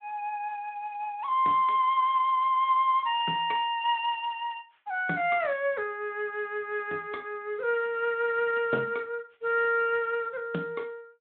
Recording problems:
phone line; 260 Hz to 3.7 kHz, Speex

